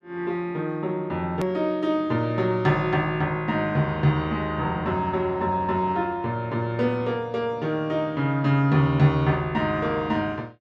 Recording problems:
click at an edit; at 1.5 s

